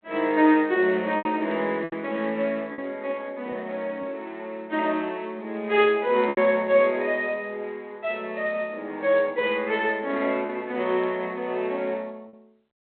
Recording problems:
phone line; 260 Hz to 3.7 kHz, G.726
lost packets; 3% of the sound replaced, filled with repeated pitch periods

